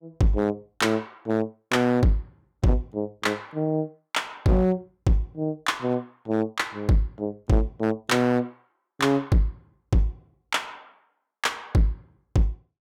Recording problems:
distortion; hard clipping, signal-to-distortion ratio 10 dB

